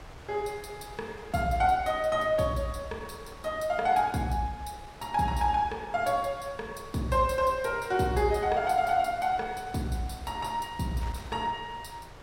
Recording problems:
wind noise; below 1.3 kHz, SNR 18 dB

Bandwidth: 16 kHz